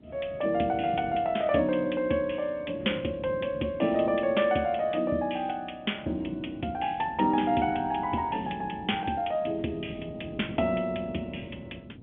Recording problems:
telephone audio; 150 Hz to 3.4 kHz, G.711
wind noise; below 310 Hz, SNR 15 dB

